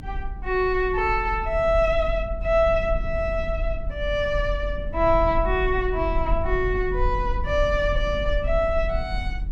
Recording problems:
rumble; below 54 Hz, SNR 7 dB

